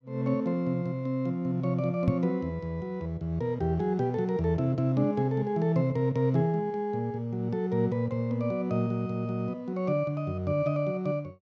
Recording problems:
microphone bump; at 2 s; peak +7 dB vs average level

